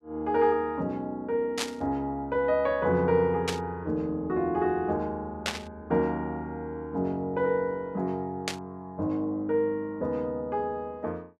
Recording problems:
static burst; 4 times, first at 1.5 s; peak +3 dB vs average level

